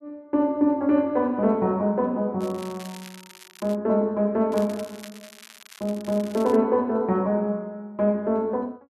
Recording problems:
crackle; from 2.5 to 4 s and from 4.5 to 6.5 s; loose cable, SNR 21 dB

